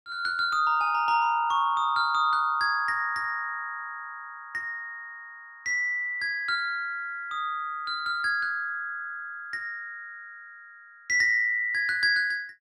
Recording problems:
none

